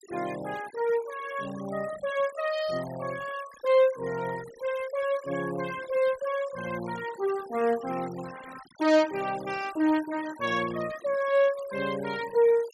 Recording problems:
noise reduction artefacts; signal-to-artefact ratio 17 dB

